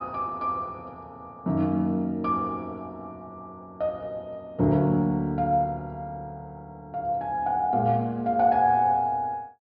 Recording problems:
treble cut off; nothing above 5.5 kHz

